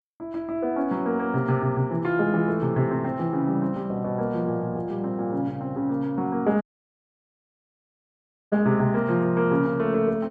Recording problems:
dropout; at 6.5 s for 2 s

